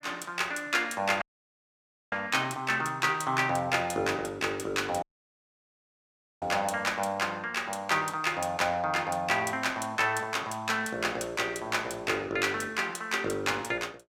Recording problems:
dropout; at 1 s for 1 s and at 5 s for 1.5 s

